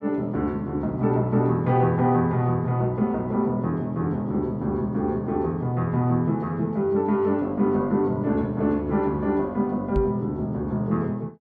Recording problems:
microphone bump; at 10 s; peak +1 dB vs average level

